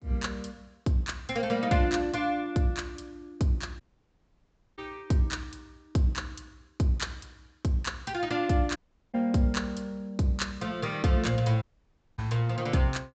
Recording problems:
treble missing; nothing above 8 kHz
audio cutting out; at 4 s for 1 s, at 9 s and at 12 s for 0.5 s

